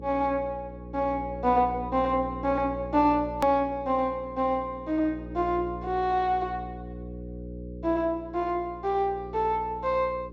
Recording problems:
treble missing; nothing above 8 kHz
electrical hum; 60 Hz, harmonics up to 540 Hz, SNR 13 dB
click at an edit; at 3.5 s

